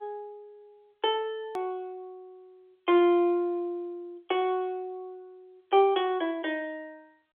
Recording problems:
phone line; 300 Hz to 3.5 kHz, G.711
hard cut with a click; at 1.5 s

